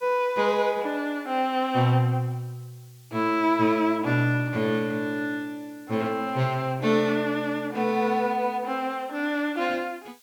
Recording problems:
background hiss; slope +3 dB per octave, SNR 29 dB

